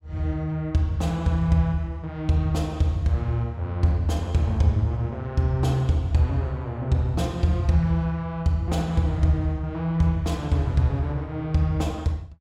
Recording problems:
none

